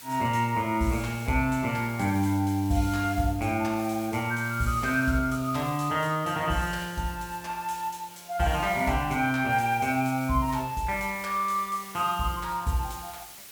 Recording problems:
background hiss; slope +1 dB per octave, SNR 17 dB

